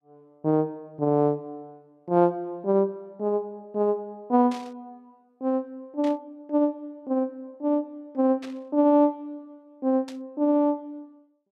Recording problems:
burst of static; 4 times, first at 4.5 s; peak -13 dB vs average level

